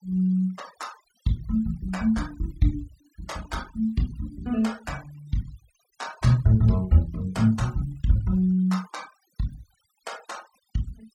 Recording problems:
denoising artefacts; signal-to-artefact ratio 22 dB

